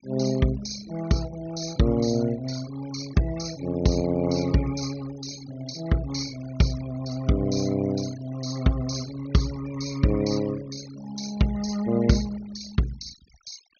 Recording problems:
treble cut off; nothing above 6.5 kHz
noise reduction artefacts; signal-to-artefact ratio 17 dB

